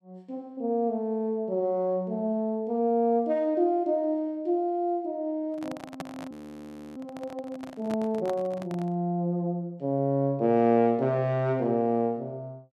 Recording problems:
microphone handling noise; from 5.5 to 9 s; peak -5 dB vs average level
audio freezing; at 6.5 s for 0.5 s

